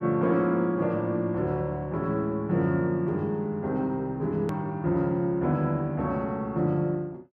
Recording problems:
edit click; at 4.5 s

